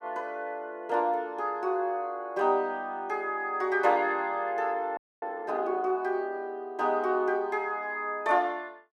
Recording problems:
frozen audio; at 5 s

